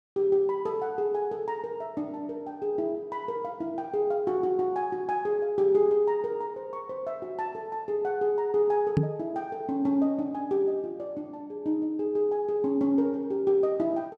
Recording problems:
knock on the microphone; at 9 s; peak +7 dB vs average level

